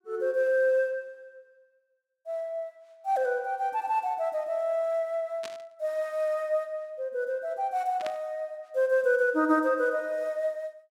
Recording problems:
static burst; at 5.5 s and at 8 s; peak -6 dB vs average level

